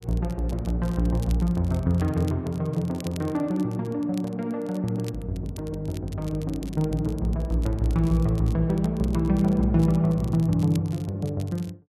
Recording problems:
crackling; vinyl, SNR 23 dB

